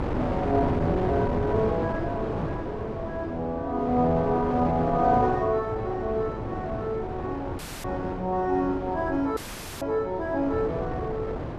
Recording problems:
wind noise; below 620 Hz, SNR 5 dB
audio cutting out; at 7.5 s and at 9.5 s

